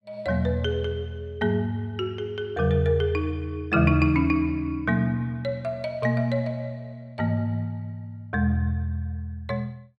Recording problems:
none

